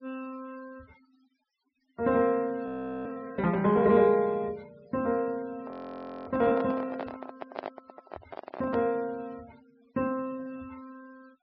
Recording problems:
treble missing; nothing above 5.5 kHz
noise reduction artefacts; signal-to-artefact ratio 26 dB
audio freezing; at 2.5 s and at 5.5 s for 0.5 s
handling noise; from 5.5 to 9 s; peak -4 dB vs average level

